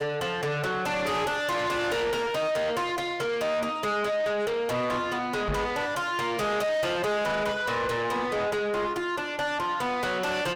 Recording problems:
distorted audio; soft clipping, signal-to-distortion ratio 6 dB
microphone bump; at 5.5 s; peak +2 dB vs average level

